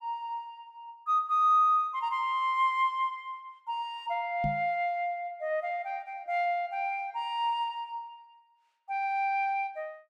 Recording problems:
microphone bump; at 4.5 s; peak -1 dB vs average level

